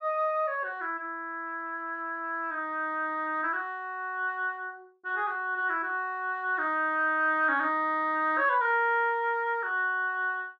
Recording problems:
low-pass filter; nothing above 8 kHz

